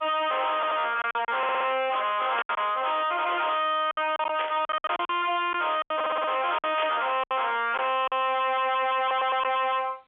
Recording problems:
phone line; 370 Hz to 3.6 kHz, G.711
distorted audio; hard clipping, signal-to-distortion ratio 6 dB
packet loss; 9% of the sound replaced, filled with silence
stutter; 4 times, first at 0.5 s
static burst; at 2.5 s, at 4.5 s and at 7 s; peak -3 dB vs average level

